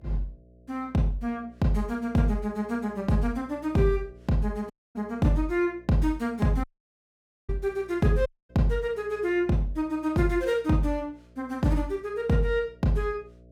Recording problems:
hum; 60 Hz, harmonics up to 660 Hz, SNR 26 dB
audio cutting out; at 4.5 s, at 6.5 s for 1 s and at 8.5 s

